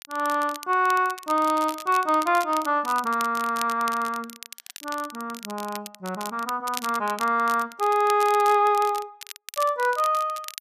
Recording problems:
crackle; vinyl, SNR 15 dB

